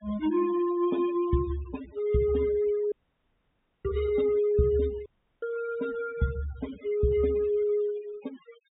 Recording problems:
treble missing; nothing above 4 kHz
noise reduction artefacts; signal-to-artefact ratio 17 dB
dropout; at 3 s for 1 s and at 5 s

